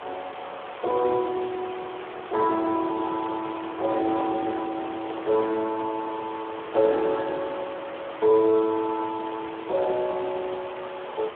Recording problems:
phone line; 340 Hz to 2.8 kHz, Speex
hiss; SNR 11 dB
handling noise; from 4 to 5.5 s; peak -5 dB vs average level

